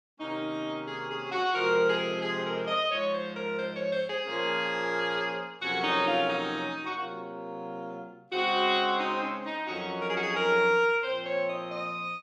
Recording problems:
none

